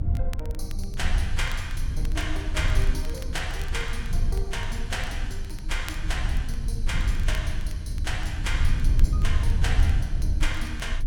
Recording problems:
low-frequency rumble; below 72 Hz, strongest tone 24 Hz, SNR -5 dB
crackle; vinyl, SNR 16 dB

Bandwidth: 17.5 kHz